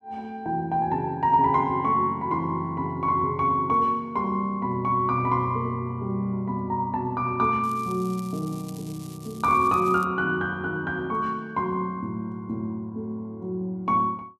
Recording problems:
crackling; from 7.5 to 10 s; loose cable, SNR 22 dB

